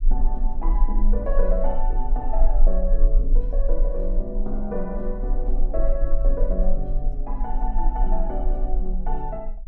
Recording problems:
low-frequency rumble; below 34 Hz, strongest tone 20 Hz, SNR -5 dB

